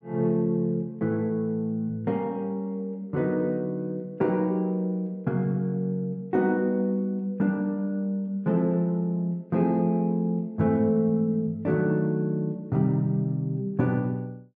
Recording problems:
none

